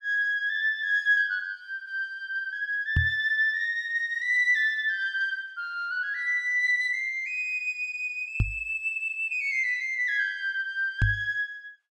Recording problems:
microphone bump; at 3 s, at 8.5 s and at 11 s; peak +4 dB vs average level

